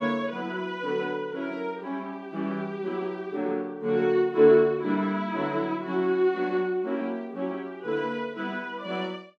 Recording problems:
none

